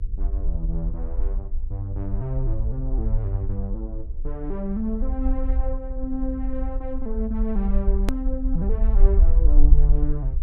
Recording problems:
hum; 60 Hz, harmonics up to 480 Hz, SNR 23 dB
low-frequency rumble; below 50 Hz, SNR -5 dB
edit click; at 8 s

